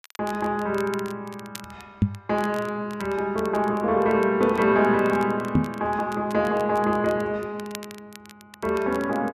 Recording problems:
crackle; vinyl, SNR 22 dB
microphone thump; at 2 s and at 5.5 s; peak +7 dB vs average level

